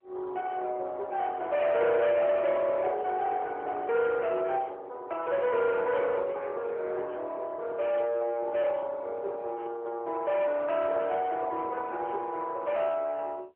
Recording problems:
telephone audio; 320 Hz to 3.3 kHz, AMR-NB
distorted audio; soft clipping, signal-to-distortion ratio 11 dB

